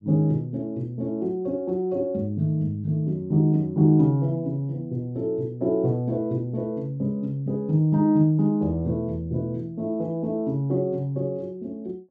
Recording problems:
none

